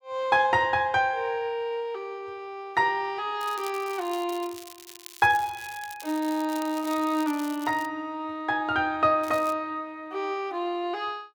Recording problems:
crackle; from 3.5 to 8 s and at 9 s; loose cable, SNR 17 dB

